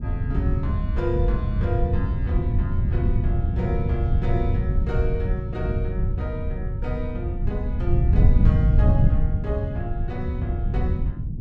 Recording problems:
wind noise; below 110 Hz, SNR -8 dB

